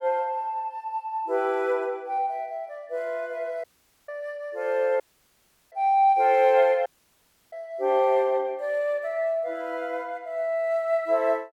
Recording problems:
audio cutting out; at 3.5 s, at 5 s for 0.5 s and at 7 s for 0.5 s

